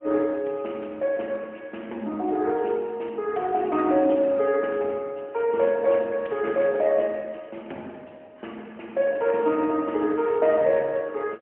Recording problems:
phone line; 240 Hz to 3.1 kHz, AMR-NB, then MP3

